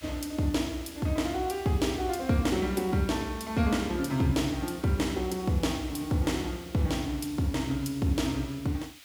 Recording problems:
background hiss; SNR 20 dB

